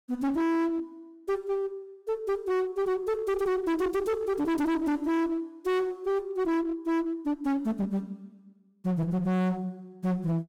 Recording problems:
distortion; hard clipping, uneven, signal-to-distortion ratio 5 dB

